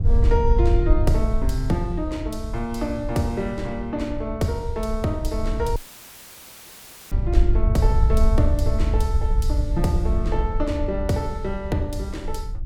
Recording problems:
wind on the microphone; below 70 Hz, SNR -2 dB
audio cutting out; at 6 s for 1.5 s; filled with static

